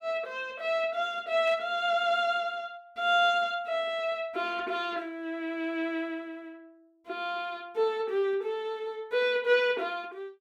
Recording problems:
burst of static; at 1.5 s; peak -15 dB vs average level

